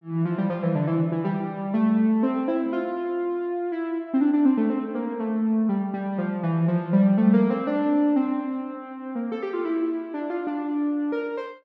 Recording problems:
none

